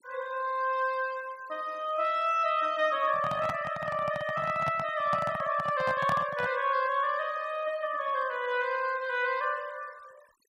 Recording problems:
noise reduction artefacts; signal-to-artefact ratio 23 dB
handling noise; from 3 to 6.5 s; peak -1 dB vs average level

